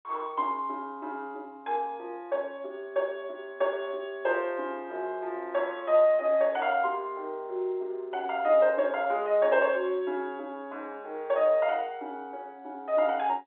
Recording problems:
phone line; 320 Hz to 3.7 kHz, G.711

